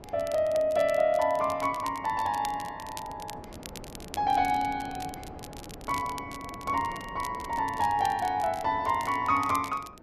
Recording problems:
wind on the microphone; below 590 Hz, SNR 18 dB
crackle; vinyl, SNR 18 dB

